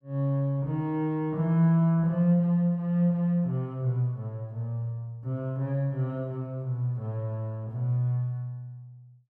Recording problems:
none

